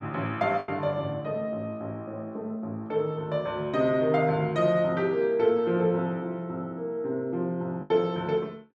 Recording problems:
packet loss; 1.9% of the sound replaced, filled with the last packet

